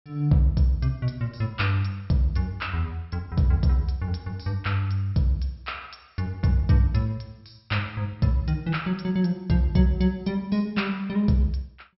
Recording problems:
low-pass filter; nothing above 5.5 kHz

